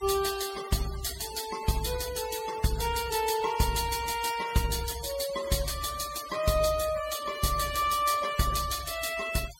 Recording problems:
denoising artefacts; signal-to-artefact ratio 12 dB

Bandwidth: 16 kHz